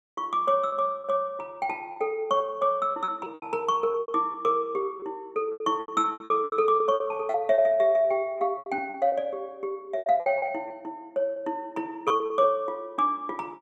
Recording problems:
lost packets; 12% of the sound replaced, filled with repeated pitch periods

